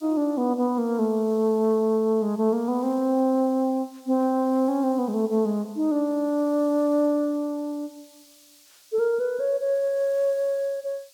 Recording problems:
background hiss; slope +4 dB per octave, SNR 28 dB

